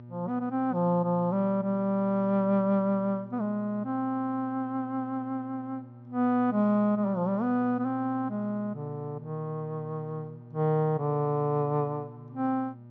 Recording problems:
low-pass filter; nothing above 8 kHz
hum; 60 Hz, harmonics up to 960 Hz, SNR 17 dB

